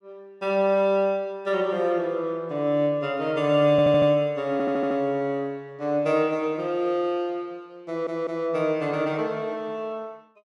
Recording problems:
audio stuttering; at 3.5 s, at 4.5 s and at 8 s

